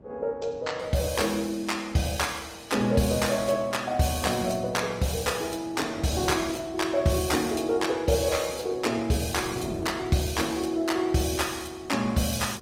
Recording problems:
lossy compression; Opus, log-spectral distance 5 dB, nothing above 16 kHz
wind noise; below 390 Hz, SNR 18 dB

